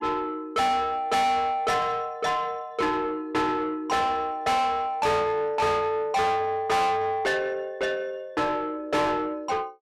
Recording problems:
distortion; soft clipping, signal-to-distortion ratio 6 dB

